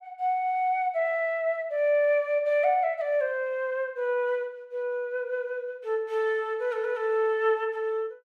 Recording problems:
none

